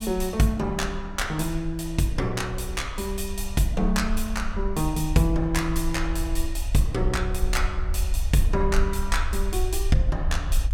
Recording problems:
rumble; below 58 Hz, SNR 4 dB

